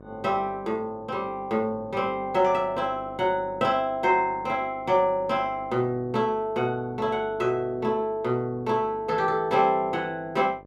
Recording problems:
hum; 50 Hz, harmonics up to 1.3 kHz, SNR 22 dB

